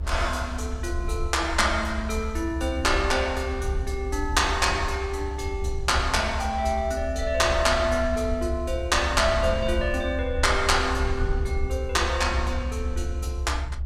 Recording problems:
low-frequency rumble; below 74 Hz, SNR 5 dB

